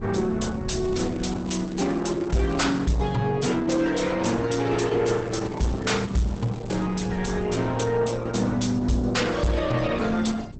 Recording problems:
codec artefacts; Opus, log-spectral distance 5 dB, nothing above 8 kHz
distorted audio; soft clipping, signal-to-distortion ratio 11 dB
wind noise; below 200 Hz, SNR 14 dB
crackle; from 1 to 3 s and from 5 to 7 s; loose cable, SNR 24 dB

